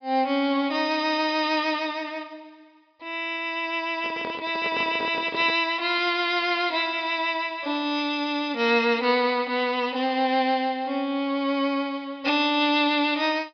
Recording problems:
low-pass filter; nothing above 5.5 kHz
handling noise; from 4 to 5.5 s; peak -6 dB vs average level

